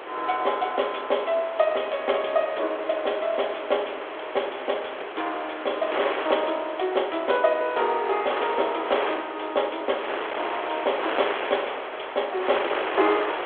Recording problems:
phone line; 320 Hz to 3.4 kHz, G.726
wind on the microphone; below 2.1 kHz, SNR 6 dB

